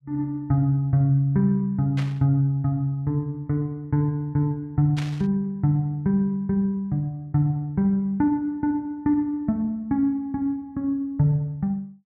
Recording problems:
static burst; at 2 s and at 5 s; peak -7 dB vs average level

